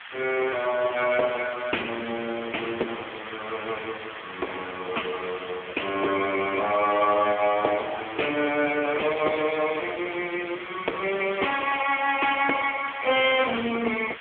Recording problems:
phone line; 300 Hz to 3.3 kHz, AMR-NB
background hiss; SNR 13 dB

